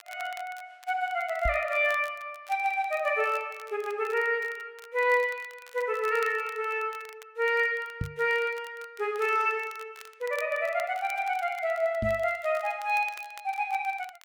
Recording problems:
crackling; vinyl, SNR 22 dB
microphone bump; at 1.5 s, at 8 s and at 12 s; peak 0 dB vs average level

